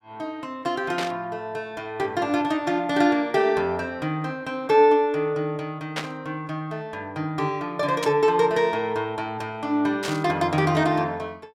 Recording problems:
burst of static; 4 times, first at 1 s; peak 0 dB vs average level

